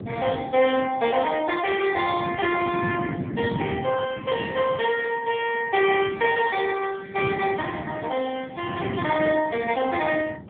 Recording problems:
phone line; 280 Hz to 3.4 kHz, AMR-NB
wind on the microphone; below 330 Hz, SNR 9 dB

